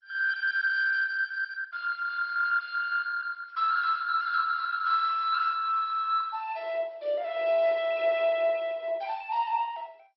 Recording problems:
lossy compression; MP2, log-spectral distance 3 dB, nothing above 4.8 kHz

